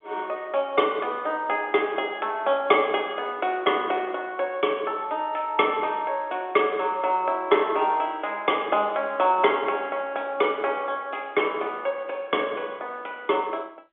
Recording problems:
telephone audio; 260 Hz to 3.4 kHz, G.711

